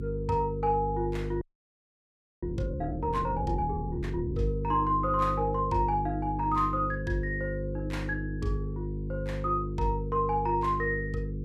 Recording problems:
hum; 50 Hz, harmonics up to 500 Hz, SNR 4 dB
audio freezing; at 1.5 s for 1 s

